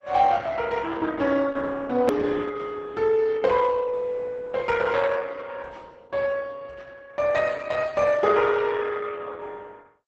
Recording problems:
codec artefacts; Opus, log-spectral distance 4 dB, nothing above 13.1 kHz
edit click; at 2 s

